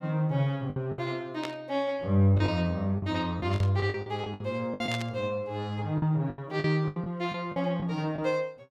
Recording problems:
packet loss; 10% of the sound replaced, filled with the last packet
burst of static; at 1.5 s, at 3.5 s and at 5 s; peak -4 dB vs average level

